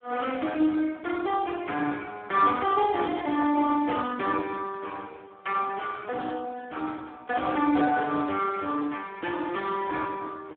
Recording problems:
phone line; 190 Hz to 3.1 kHz, Speex

